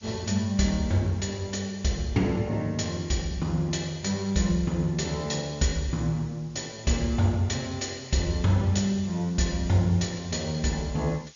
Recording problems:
low-pass filter; nothing above 7 kHz
hiss; slope +4 dB per octave, SNR 27 dB

